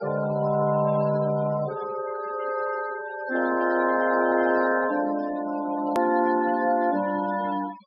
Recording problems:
treble missing; nothing above 5.4 kHz
denoising artefacts; signal-to-artefact ratio 15 dB
hard cut with a click; at 6 s

